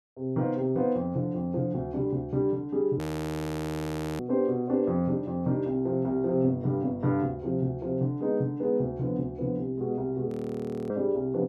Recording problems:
audio freezing; at 3 s for 1 s and at 10 s for 0.5 s

